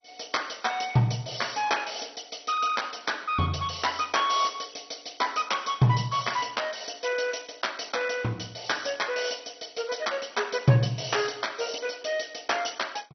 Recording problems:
codec artefacts; MP2, log-spectral distance 10 dB, nothing above 6 kHz

